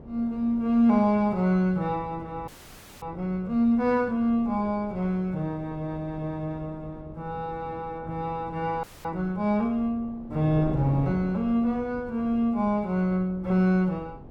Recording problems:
wind noise; below 380 Hz, SNR 17 dB
audio freezing; at 2.5 s for 0.5 s and at 9 s

